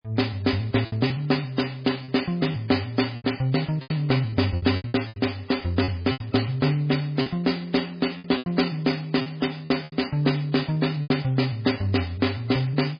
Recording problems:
lossy compression; MP3, log-spectral distance 6 dB
packet loss; 9% of the sound replaced, filled with repeated pitch periods

